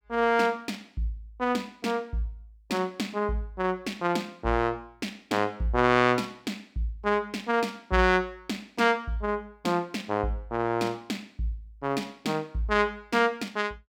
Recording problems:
none

